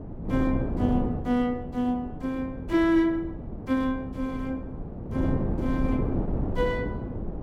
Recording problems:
wind noise; below 310 Hz, SNR 4 dB

